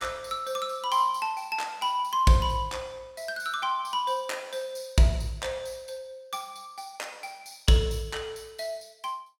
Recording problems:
none

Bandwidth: 16.5 kHz